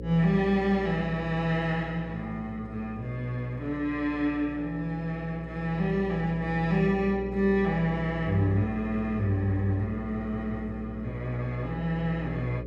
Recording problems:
hum; 60 Hz, harmonics up to 540 Hz, SNR 11 dB

